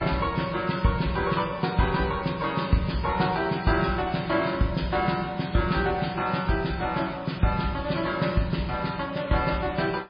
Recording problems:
lossy compression; MP3, log-spectral distance 5 dB, nothing above 4.4 kHz

